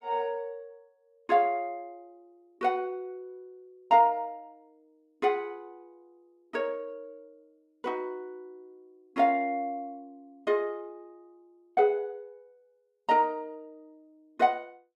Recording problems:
none

